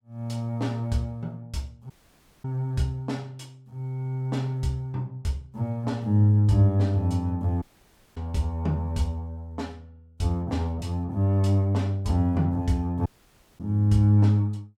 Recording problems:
audio cutting out; at 2 s for 0.5 s, at 7.5 s for 0.5 s and at 13 s for 0.5 s

